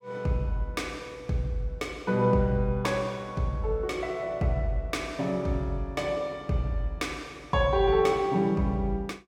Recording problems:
none

